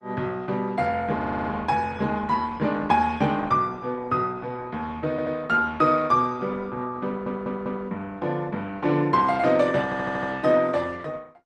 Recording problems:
lossy codec; Opus, log-spectral distance 3 dB
audio stuttering; 4 times, first at 1 s

